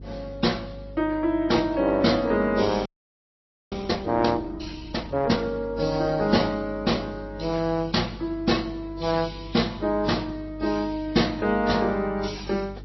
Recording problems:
lossy codec; AAC, then MP3, log-spectral distance 4 dB, nothing above 5.7 kHz
electrical hum; 50 Hz, harmonics up to 450 Hz, SNR 17 dB
audio freezing; at 3 s for 1 s

